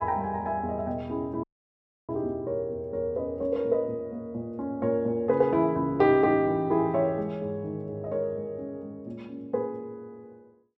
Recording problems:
dropout; at 1.5 s for 0.5 s

